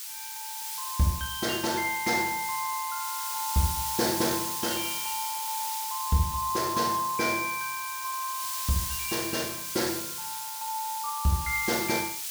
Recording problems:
background hiss; slope +5 dB per octave, SNR 3 dB

